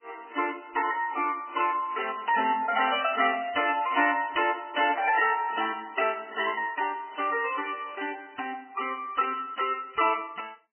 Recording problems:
codec artefacts; MP3, log-spectral distance 6 dB, nothing above 2.7 kHz

